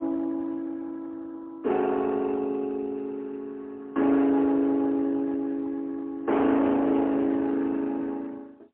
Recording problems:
telephone audio; 240 Hz to 2.6 kHz, AMR-NB, then MP3
distortion; hard clipping, uneven, signal-to-distortion ratio 8 dB

